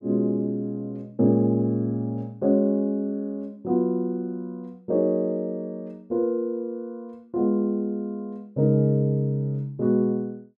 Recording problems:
none

